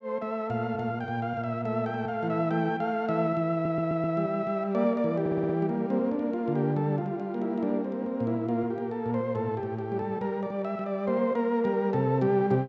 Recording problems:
audio stuttering; at 3.5 s and at 5 s

